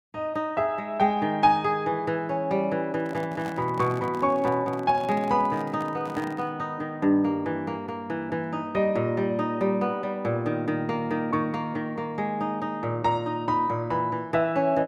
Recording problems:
handling noise; from 3 to 6.5 s; peak -7 dB vs average level

